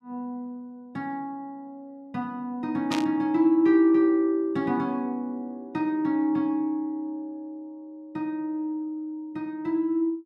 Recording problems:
burst of static; at 3 s; peak -2 dB vs average level

